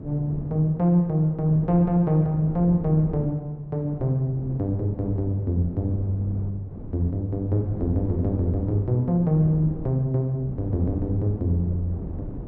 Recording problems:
wind noise; below 270 Hz, SNR 13 dB

